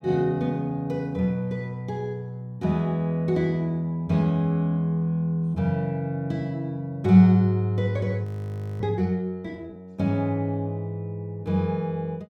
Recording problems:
frozen audio; at 8.5 s for 0.5 s

